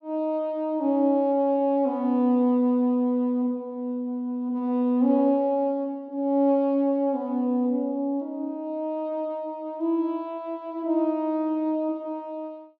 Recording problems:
none

